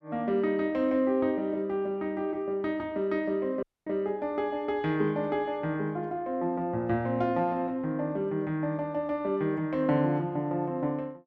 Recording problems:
dropout; at 3.5 s

